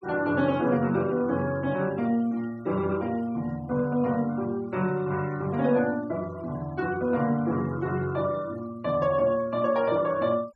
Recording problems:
denoising artefacts; signal-to-artefact ratio 24 dB

